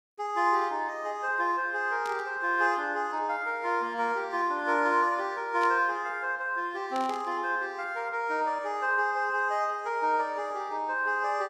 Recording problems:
burst of static; at 2 s, at 5.5 s and at 7 s; peak -9 dB vs average level

